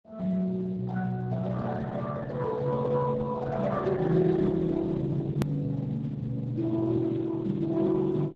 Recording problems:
lossy compression; Speex, then Opus, log-spectral distance 3 dB, nothing above 13.7 kHz
hard cut with a click; at 5.5 s

